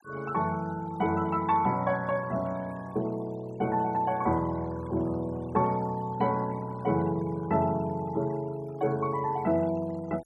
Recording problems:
denoising artefacts; signal-to-artefact ratio 22 dB

